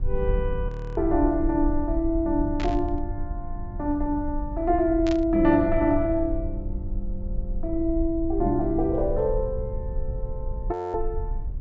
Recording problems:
treble cut off; nothing above 8 kHz
low-frequency rumble; below 56 Hz, SNR 8 dB
frozen audio; at 0.5 s and at 11 s
burst of static; at 2.5 s and at 5 s; peak -7 dB vs average level

